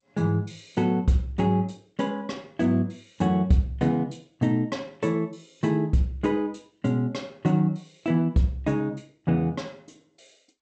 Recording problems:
codec artefacts; G.722, log-spectral distance 2 dB, nothing above 7.3 kHz

